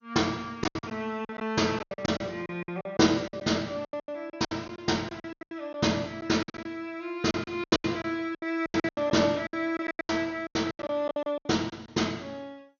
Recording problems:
codec artefacts; MP2, log-spectral distance 2 dB, nothing above 6.5 kHz
packet loss; 19% of the sound replaced, filled with silence

